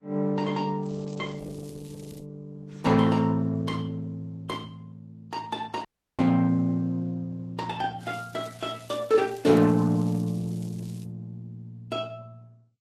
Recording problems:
codec artefacts; Opus, then Vorbis, log-spectral distance 3 dB, nothing above 13.8 kHz
crackling; from 1 to 2 s and from 8 to 11 s; loose cable, SNR 25 dB
audio cutting out; at 6 s

